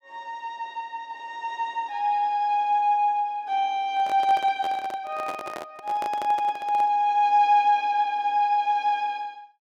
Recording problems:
handling noise; from 4 to 7 s; peak -6 dB vs average level

